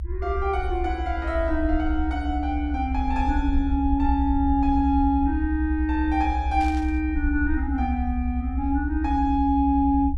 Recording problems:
low-frequency rumble; below 70 Hz, SNR 4 dB
static burst; at 6.5 s; peak -14 dB vs average level

